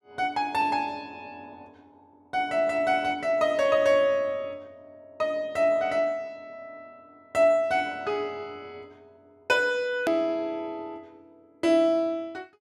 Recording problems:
click at an edit; at 10 s

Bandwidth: 14 kHz